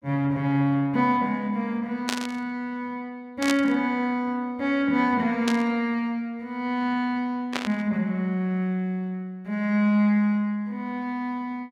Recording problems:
static burst; 4 times, first at 2 s; peak +2 dB vs average level

